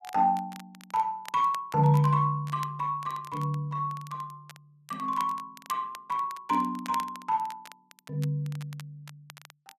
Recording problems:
crackling; vinyl, SNR 20 dB

